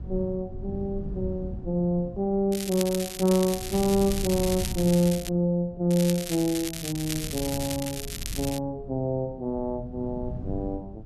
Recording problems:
wind noise; below 150 Hz, SNR 12 dB
crackle; from 2.5 to 5.5 s and from 6 to 8.5 s; loose cable, SNR 8 dB

